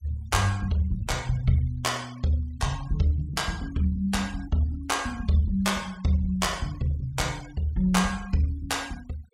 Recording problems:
noise reduction artefacts; signal-to-artefact ratio 21 dB

